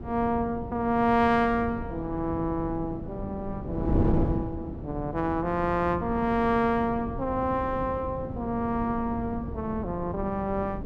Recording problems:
wind noise; below 290 Hz, SNR 7 dB

